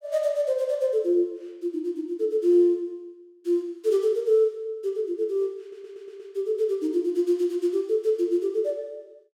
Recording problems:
stutter; at 5.5 s

